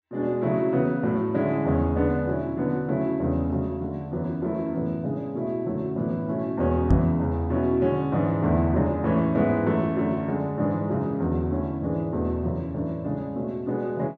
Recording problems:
knock on the microphone; at 7 s; peak +8 dB vs average level

